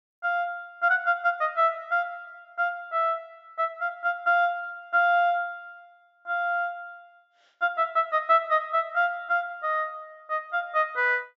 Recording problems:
low-pass filter; nothing above 8 kHz

